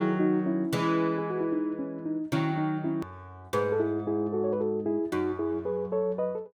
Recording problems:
click at an edit; at 3 s

